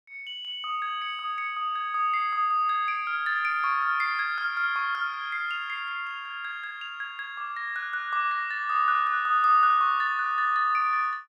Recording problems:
none

